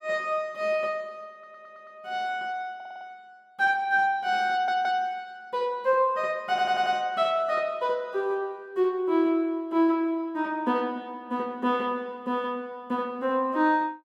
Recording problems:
stutter; 4 times, first at 1.5 s

